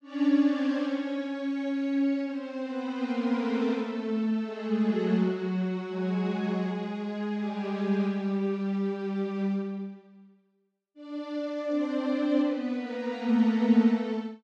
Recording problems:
none

